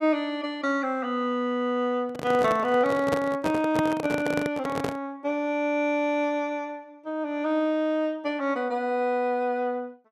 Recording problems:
handling noise; from 2 to 5 s; peak +2 dB vs average level

